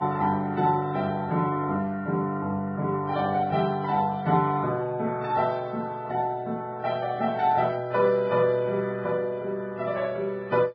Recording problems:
lossy codec; AAC, then Vorbis, log-spectral distance 2 dB

